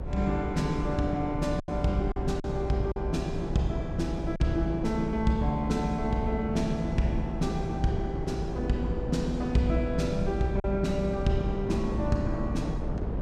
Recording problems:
low-frequency rumble; below 60 Hz, strongest tone 58 Hz, SNR 10 dB
wind on the microphone; below 330 Hz, SNR 6 dB
lost packets; 2% of the sound replaced, filled with silence

